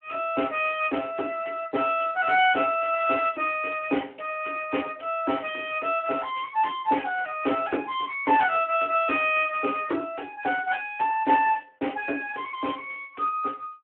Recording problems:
phone line; 260 Hz to 3.3 kHz, Speex

